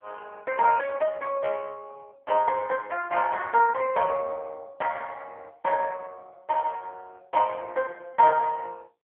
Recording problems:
telephone audio; 370 Hz to 2.5 kHz, AMR-NB

